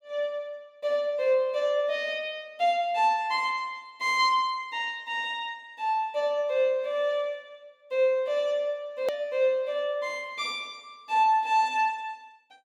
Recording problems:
edit click; at 9 s

